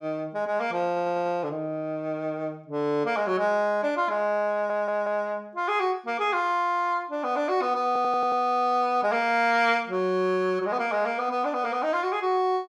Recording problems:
stutter; at 1 s, at 4.5 s and at 8 s

